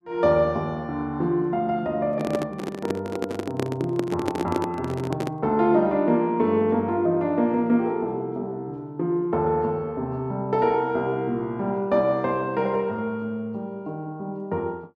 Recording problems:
handling noise; from 2 to 5.5 s; peak +3 dB vs average level

